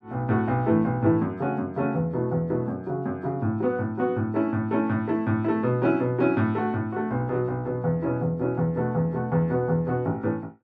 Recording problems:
none

